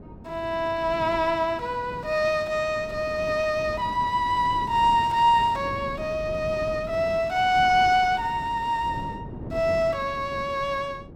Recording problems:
wind on the microphone; below 330 Hz, SNR 15 dB

